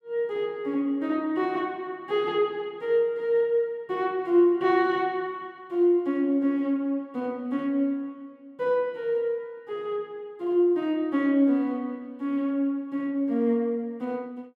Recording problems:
none

